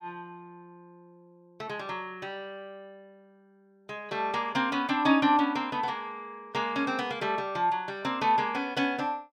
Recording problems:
none

